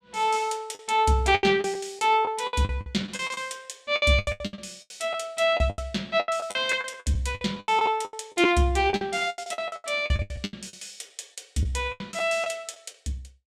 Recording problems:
packet loss; 19% of the sound replaced, filled with the last packet

